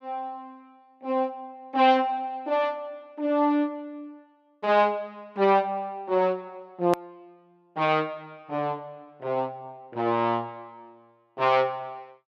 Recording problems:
edit click; at 7 s

